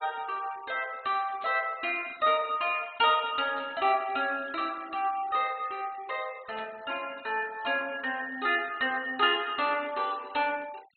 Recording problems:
low-pass filter; nothing above 4.2 kHz
denoising artefacts; signal-to-artefact ratio 23 dB
static burst; 4 times, first at 1.5 s; peak -14 dB vs average level

